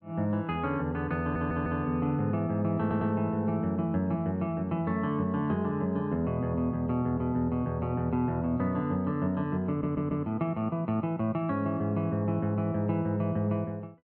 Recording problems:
stutter; at 1 s, at 3 s and at 9.5 s

